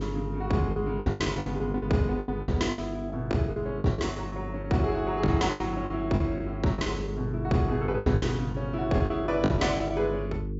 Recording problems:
treble missing; nothing above 8 kHz
mains hum; 50 Hz, harmonics up to 450 Hz, SNR 8 dB
lost packets; 14% of the sound replaced, filled with the last packet

